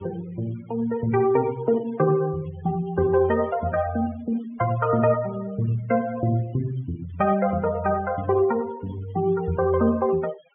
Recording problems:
low-pass filter; nothing above 3.3 kHz
noise reduction artefacts; signal-to-artefact ratio 18 dB

